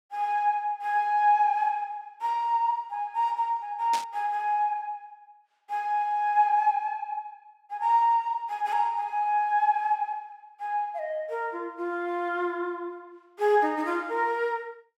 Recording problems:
burst of static; at 4 s; peak -3 dB vs average level

